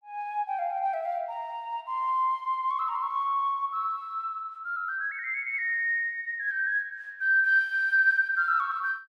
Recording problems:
none

